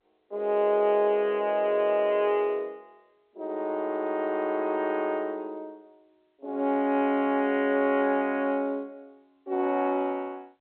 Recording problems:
telephone audio; 240 Hz to 3.3 kHz, G.711

